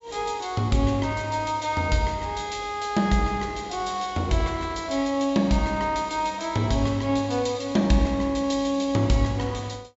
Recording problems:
low-pass filter; nothing above 8 kHz

